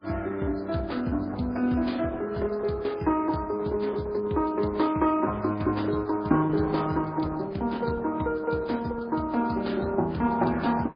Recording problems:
codec artefacts; Opus, then MP3, log-spectral distance 4 dB

